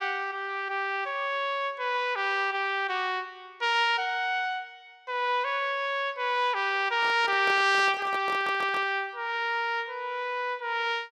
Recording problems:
microphone handling noise; from 7 to 9 s; peak -8 dB vs average level
audio stuttering; at 8.5 s

